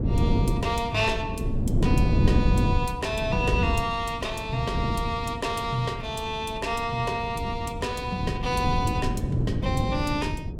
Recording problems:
wind on the microphone; below 200 Hz, SNR 0 dB

